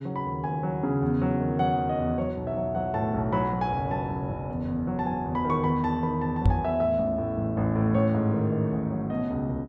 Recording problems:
microphone thump; at 6.5 s; peak +7 dB vs average level

